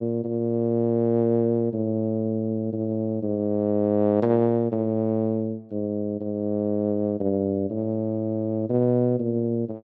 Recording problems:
none

